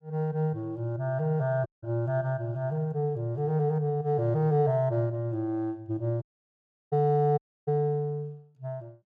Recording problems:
audio cutting out; at 1.5 s, at 6 s for 0.5 s and at 7.5 s

